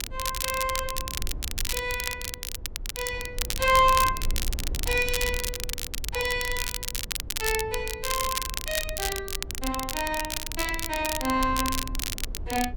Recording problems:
low-frequency rumble; below 66 Hz, strongest tone 20 Hz, SNR 10 dB
crackle; vinyl, SNR 3 dB

